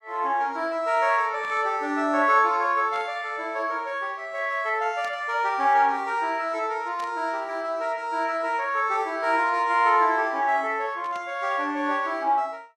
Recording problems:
burst of static; 5 times, first at 1.5 s; peak -14 dB vs average level

